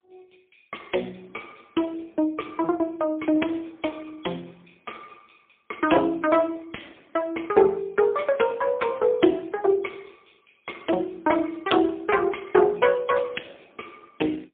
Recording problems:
phone line; 240 Hz to 3.3 kHz, AMR-NB, then MP3

